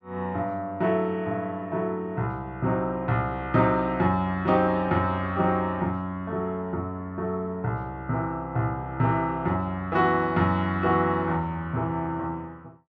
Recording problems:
none

